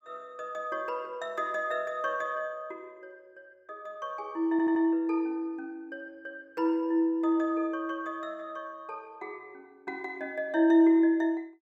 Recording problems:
audio stuttering; at 4.5 s

